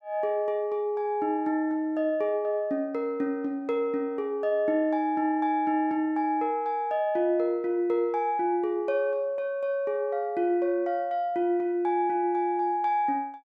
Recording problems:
none

